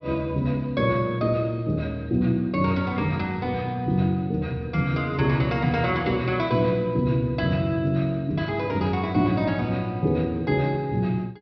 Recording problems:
treble cut off; nothing above 5.5 kHz

